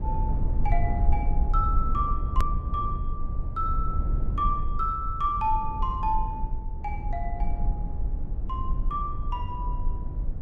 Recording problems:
low-frequency rumble; below 62 Hz, SNR -1 dB
edit click; at 2.5 s

